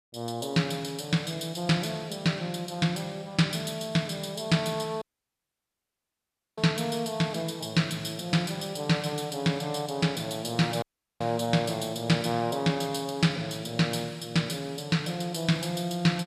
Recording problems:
dropout; at 5 s for 1.5 s and at 11 s

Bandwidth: 14.5 kHz